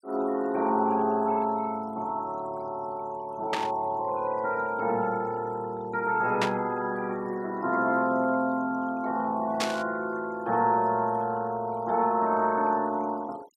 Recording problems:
denoising artefacts; signal-to-artefact ratio 24 dB
burst of static; at 3.5 s, at 6.5 s and at 9.5 s; peak +3 dB vs average level

